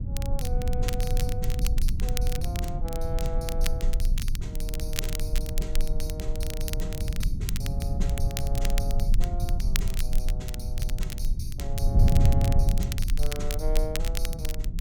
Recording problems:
rumble; below 36 Hz, strongest tone 22 Hz, SNR -4 dB
wind on the microphone; below 120 Hz, SNR -7 dB
crackle; vinyl, SNR 1 dB

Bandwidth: 17 kHz